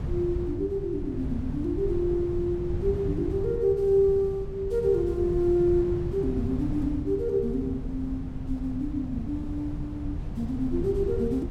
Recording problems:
wind on the microphone; below 160 Hz, SNR 7 dB

